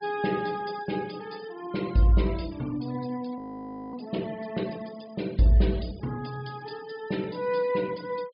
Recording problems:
low-pass filter; nothing above 5.5 kHz
noise reduction artefacts; signal-to-artefact ratio 20 dB
frozen audio; at 3.5 s for 0.5 s

